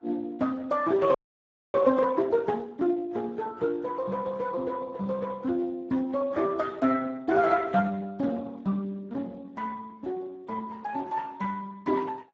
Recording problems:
lossy compression; AAC, then Speex, log-spectral distance 3 dB
audio freezing; at 1 s for 0.5 s

